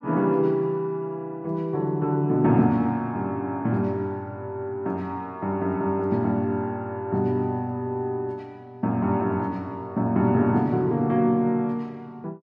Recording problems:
none

